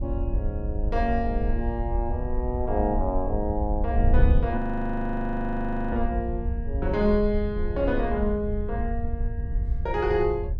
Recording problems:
wind on the microphone; below 72 Hz, SNR 1 dB
frozen audio; at 4.5 s for 1.5 s

